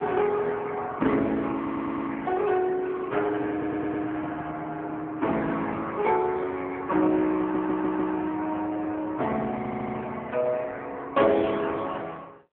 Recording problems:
phone line; 170 Hz to 3.6 kHz, AMR-NB
stutter; 4 times, first at 1.5 s

